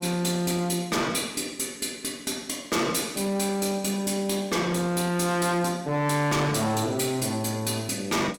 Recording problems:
distorted audio; hard clipping, signal-to-distortion ratio 8 dB

